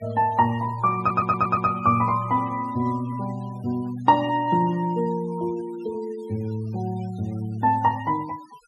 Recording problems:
denoising artefacts; signal-to-artefact ratio 23 dB
stutter; at 1 s

